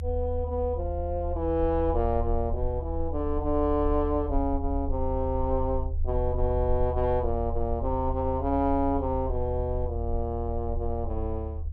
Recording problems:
rumble; below 78 Hz, SNR 4 dB

